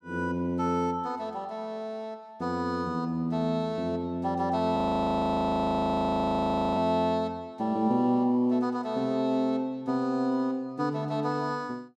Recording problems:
audio freezing; at 5 s for 2 s

